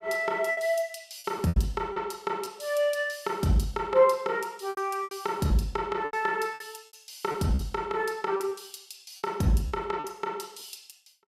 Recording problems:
packet loss; 8% of the sound replaced, filled with repeated pitch periods

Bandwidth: 15.5 kHz